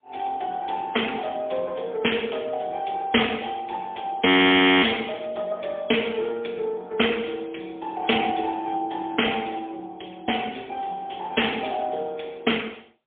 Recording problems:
phone line; 240 Hz to 3.4 kHz, AMR-NB, then MP3
audio freezing; at 4.5 s for 0.5 s

